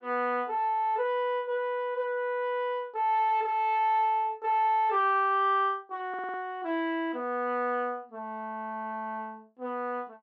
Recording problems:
stutter; at 6 s

